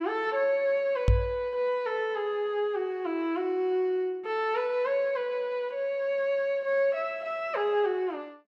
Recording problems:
microphone thump; at 1 s; peak +9 dB vs average level

